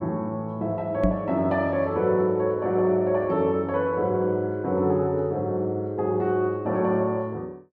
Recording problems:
microphone bump; at 1 s; peak +5 dB vs average level

